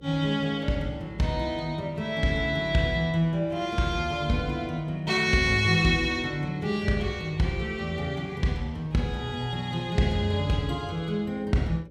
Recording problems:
hum; 60 Hz, harmonics up to 540 Hz, SNR 25 dB

